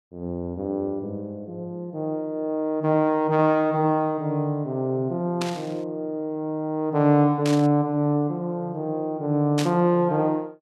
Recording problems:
burst of static; at 5.5 s, at 7.5 s and at 9.5 s; peak -2 dB vs average level

